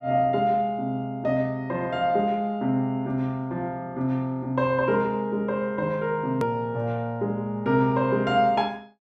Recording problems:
click at an edit; at 6.5 s

